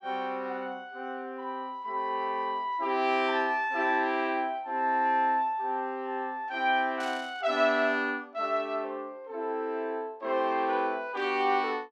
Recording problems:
static burst; at 7 s; peak -11 dB vs average level

